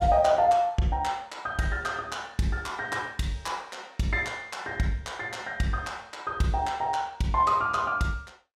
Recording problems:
none

